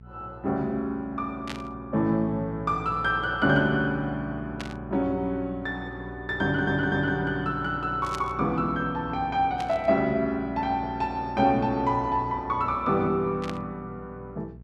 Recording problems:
hum; 60 Hz, harmonics up to 480 Hz, SNR 16 dB
burst of static; 5 times, first at 1.5 s; peak -5 dB vs average level
audio stuttering; at 6.5 s

